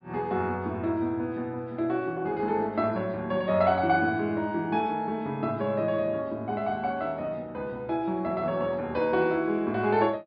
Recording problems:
treble missing; nothing above 5 kHz

